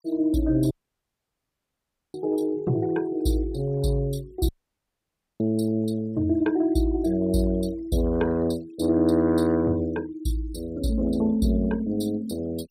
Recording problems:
denoising artefacts; signal-to-artefact ratio 23 dB
audio cutting out; at 0.5 s for 1.5 s and at 4.5 s for 1 s

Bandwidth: 15.5 kHz